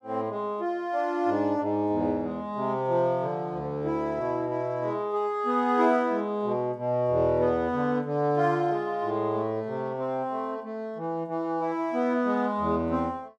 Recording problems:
none

